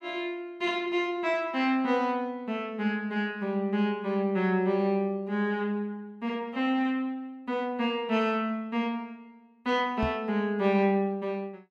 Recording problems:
microphone bump; at 10 s; peak 0 dB vs average level

